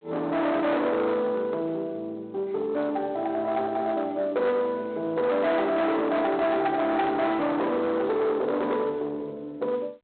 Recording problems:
phone line; 990 Hz to 2 kHz, G.726
distorted audio; soft clipping, signal-to-distortion ratio 9 dB

